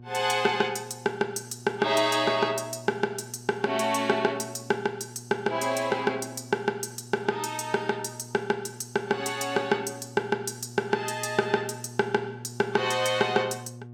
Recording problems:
hum; 60 Hz, harmonics up to 720 Hz, SNR 17 dB

